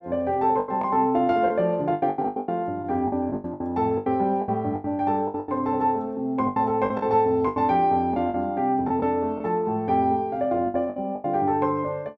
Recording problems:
packet loss; 13% of the sound replaced, filled with the last packet

